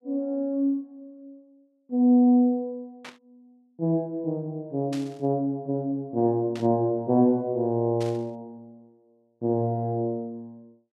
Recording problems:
burst of static; 4 times, first at 3 s; peak -11 dB vs average level

